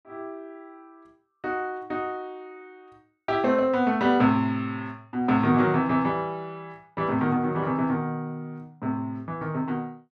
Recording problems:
none

